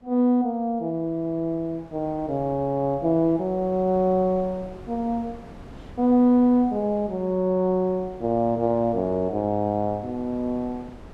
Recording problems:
wind noise; below 520 Hz, SNR 21 dB

